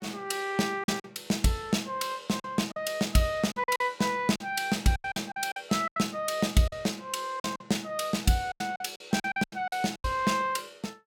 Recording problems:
packet loss; 11% of the sound replaced, filled with silence

